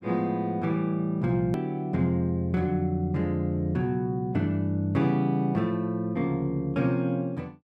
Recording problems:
hard cut with a click; at 1.5 s

